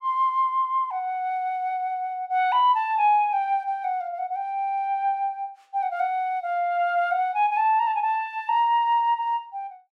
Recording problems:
none

